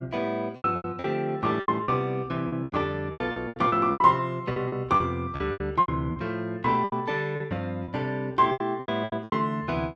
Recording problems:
lost packets; 16% of the sound replaced, filled with repeated pitch periods

